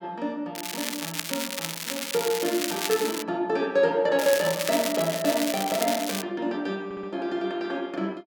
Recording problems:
crackling; from 0.5 to 3 s and from 4 to 6 s; loose cable, SNR 4 dB
audio stuttering; at 7 s

